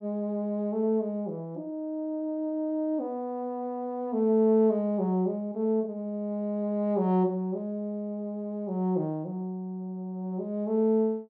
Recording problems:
none

